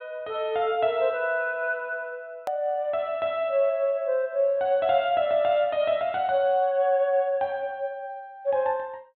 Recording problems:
low-pass filter; nothing above 4 kHz
edit click; at 2.5 s

